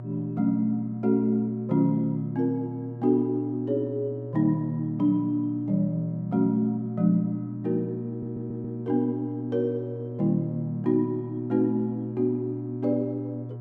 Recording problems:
hum; 60 Hz, harmonics up to 720 Hz, SNR 11 dB
stutter; at 8 s

